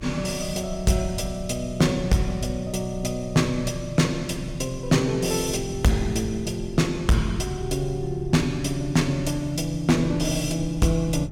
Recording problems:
distortion; hard clipping, signal-to-distortion ratio 10 dB
rumble; below 100 Hz, SNR 15 dB

